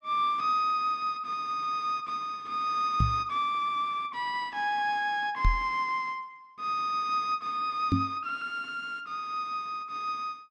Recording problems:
microphone bump; at 3 s, at 5.5 s and at 8 s; peak +7 dB vs average level

